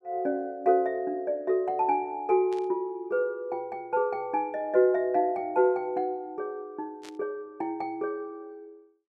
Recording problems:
burst of static; at 2.5 s and at 7 s; peak -15 dB vs average level

